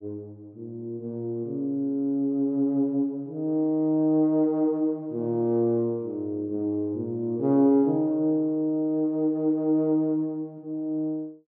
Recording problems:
none

